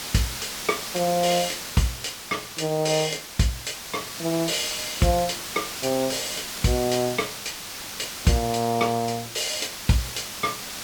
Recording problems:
background hiss; slope 0 dB per octave, SNR 7 dB

